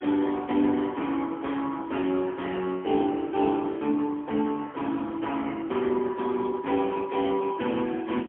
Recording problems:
telephone audio; 190 Hz to 3.3 kHz, AMR-NB, then MP3

